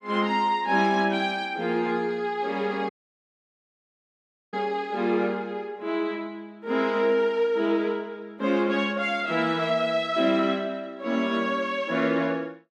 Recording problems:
dropout; at 3 s for 1.5 s

